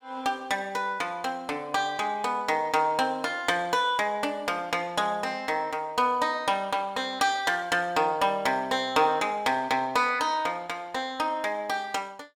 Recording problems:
none

